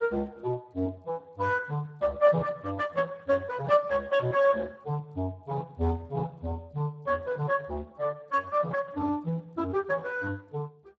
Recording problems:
codec artefacts; Speex, log-spectral distance 3 dB

